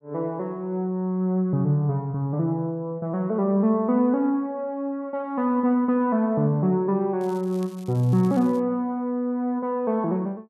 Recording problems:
crackling; from 7 to 8.5 s; loose cable, SNR 27 dB

